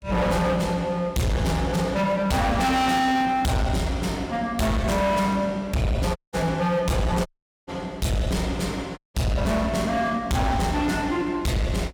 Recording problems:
distortion; hard clipping, signal-to-distortion ratio 6 dB
audio cutting out; at 6 s, at 7.5 s and at 9 s

